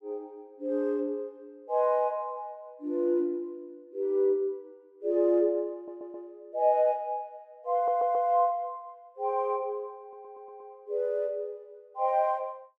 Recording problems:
audio stuttering; at 6 s, at 7.5 s and at 10 s

